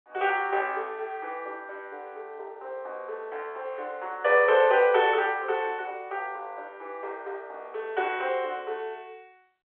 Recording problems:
phone line; 340 Hz to 3.5 kHz, G.711

